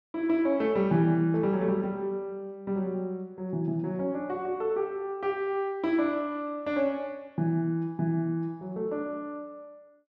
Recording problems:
none

